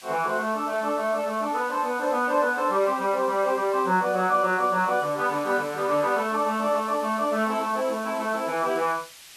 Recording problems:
background hiss; slope +3 dB per octave, SNR 20 dB

